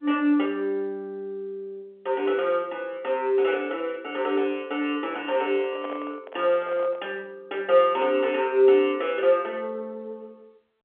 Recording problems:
telephone audio; 240 Hz to 3.4 kHz, G.711
handling noise; from 5 to 7 s; peak -8 dB vs average level

